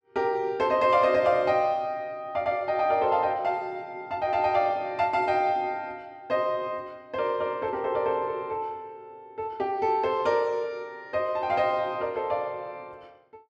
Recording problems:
none

